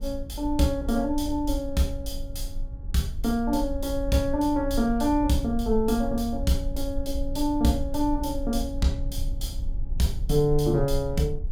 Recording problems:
rumble; below 54 Hz, SNR 8 dB

